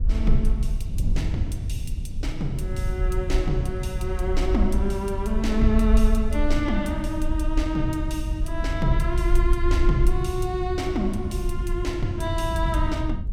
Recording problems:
low-frequency rumble; below 52 Hz, SNR 2 dB
wind noise; below 98 Hz, SNR 4 dB

